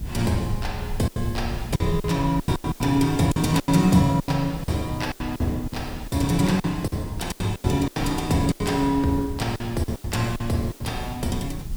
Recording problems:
hiss; SNR 21 dB
rumble; below 100 Hz, SNR 13 dB
wind noise; below 250 Hz, SNR 21 dB
lost packets; 13% of the sound replaced, filled with silence

